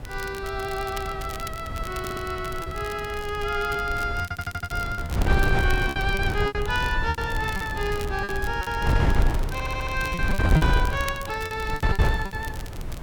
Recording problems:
hiss; SNR 22 dB
wind on the microphone; below 140 Hz, SNR 1 dB
crackle; vinyl, SNR 14 dB
lost packets; 10% of the sound replaced, filled with repeated pitch periods
audio stuttering; at 2 s, at 4 s and at 9.5 s

